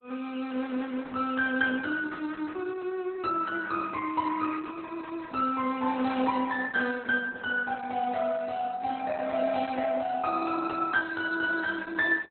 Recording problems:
lossy codec; Opus, log-spectral distance 4 dB, nothing above 4 kHz

